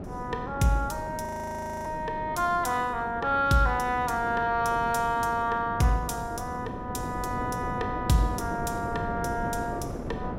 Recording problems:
wind noise; below 450 Hz, SNR 9 dB
audio freezing; at 1.5 s for 0.5 s

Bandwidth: 16.5 kHz